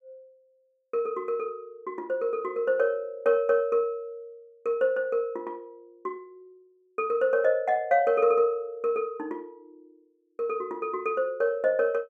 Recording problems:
none

